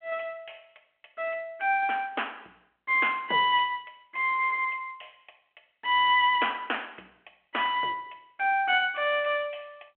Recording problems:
phone line; 320 Hz to 3.3 kHz, G.726

